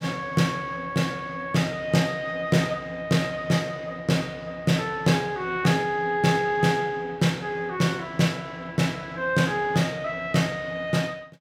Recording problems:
none

